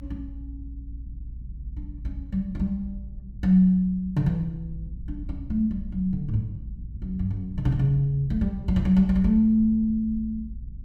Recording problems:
low-frequency rumble; below 80 Hz, SNR 15 dB

